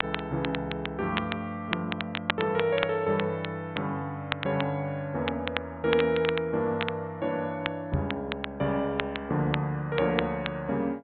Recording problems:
treble cut off; nothing above 4 kHz
crackling; vinyl, SNR 7 dB
knock on the microphone; at 8 s; peak +6 dB vs average level

